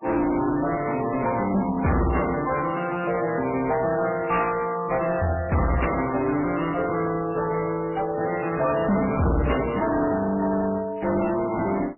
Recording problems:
lossy compression; MP3, then AAC, log-spectral distance 6 dB, nothing above 2.7 kHz
distortion; hard clipping, uneven, signal-to-distortion ratio 6 dB

